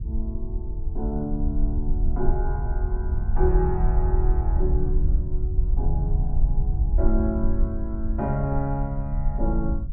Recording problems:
rumble; below 62 Hz, SNR -3 dB

